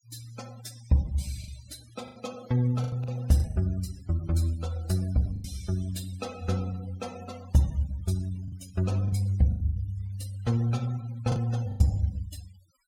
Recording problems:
denoising artefacts; signal-to-artefact ratio 21 dB
packet loss; 6% of the sound replaced, filled with the last packet

